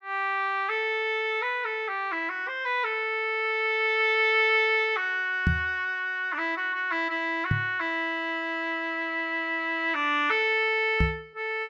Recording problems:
microphone thump; at 5.5 s, at 7.5 s and at 11 s; peak +5 dB vs average level

